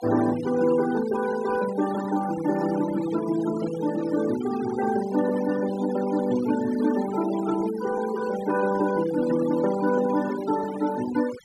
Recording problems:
noise reduction artefacts; signal-to-artefact ratio 14 dB

